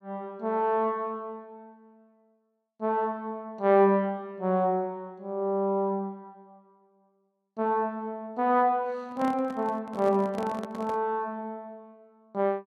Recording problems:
handling noise; from 9 to 11 s; peak -7 dB vs average level

